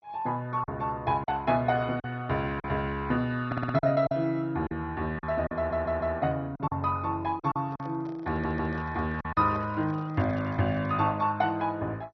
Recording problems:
lossy compression; MP2, log-spectral distance 2 dB, nothing above 5.5 kHz
packet loss; 6% of the sound replaced, filled with silence
stutter; at 3.5 s, at 5.5 s and at 8.5 s
microphone handling noise; from 7.5 to 11 s; peak -12 dB vs average level

